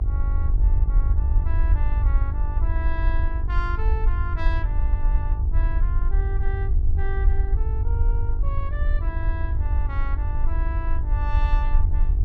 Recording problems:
electrical hum; 50 Hz, harmonics up to 1.1 kHz, SNR 6 dB
rumble; below 66 Hz, SNR -12 dB

